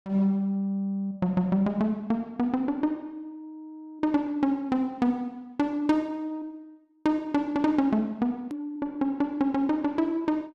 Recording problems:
click at an edit; at 8.5 s

